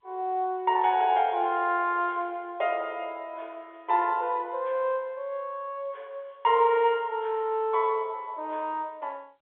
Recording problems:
telephone audio; 320 Hz to 3.6 kHz, G.711

